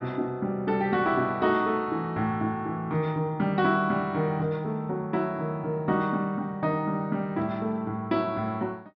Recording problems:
low-pass filter; nothing above 5.5 kHz

